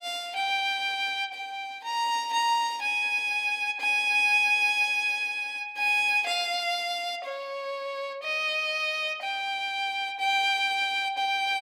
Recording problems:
none

